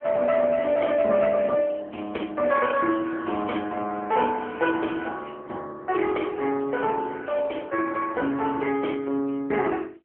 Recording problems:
phone line; 240 Hz to 3.2 kHz, AMR-NB

